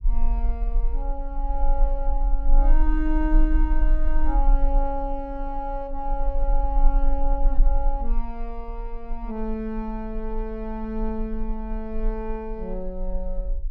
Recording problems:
rumble; below 36 Hz, strongest tone 24 Hz, SNR -4 dB

